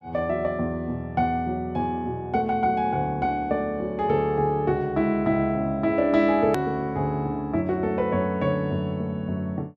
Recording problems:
edit click; at 6.5 s

